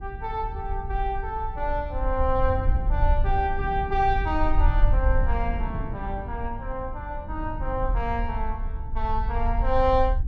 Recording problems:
rumble; below 60 Hz, SNR 1 dB
wind noise; below 190 Hz, SNR 12 dB

